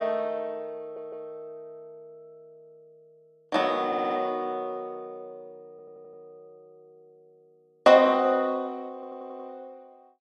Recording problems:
audio stuttering; 4 times, first at 1 s

